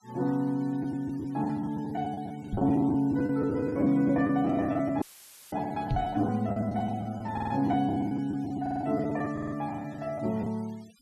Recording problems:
denoising artefacts; signal-to-artefact ratio 26 dB
packet loss; 13% of the sound replaced, filled with the last packet
microphone bump; at 2.5 s and at 6 s; peak +2 dB vs average level
audio cutting out; at 5 s for 0.5 s; filled with static
audio stuttering; at 7.5 s, at 8.5 s and at 9.5 s

